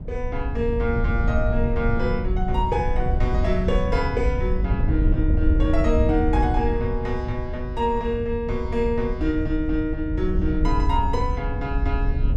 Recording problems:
wind noise; below 82 Hz, SNR 0 dB

